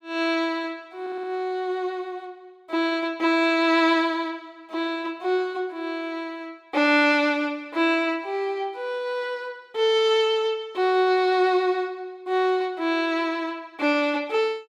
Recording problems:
stutter; at 1 s

